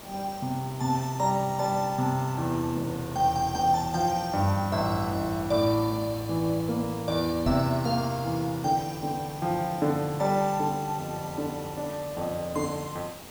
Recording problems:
background hiss; SNR 15 dB
knock on the microphone; at 7.5 s; peak +2 dB vs average level

